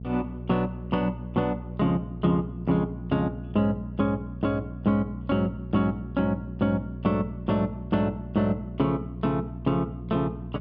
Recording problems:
electrical hum; 60 Hz, harmonics up to 480 Hz, SNR 10 dB

